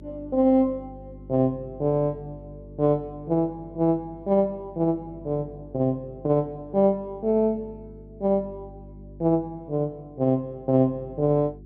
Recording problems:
hum; 50 Hz, harmonics up to 400 Hz, SNR 21 dB

